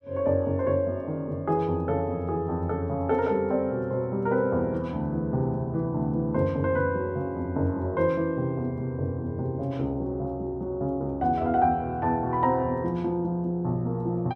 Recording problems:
none

